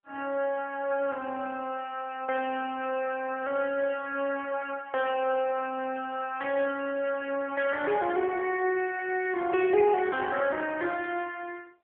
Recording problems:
telephone audio; 320 Hz to 3.3 kHz, AMR-NB

